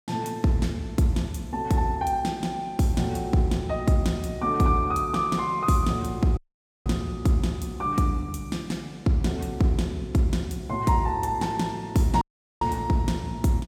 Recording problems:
dropout; at 6.5 s and at 12 s

